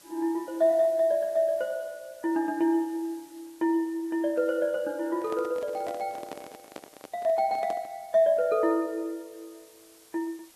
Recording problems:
lossy codec; Vorbis, log-spectral distance 4 dB
background hiss; slope -1 dB per octave, SNR 26 dB
handling noise; from 5 to 8 s; peak -8 dB vs average level

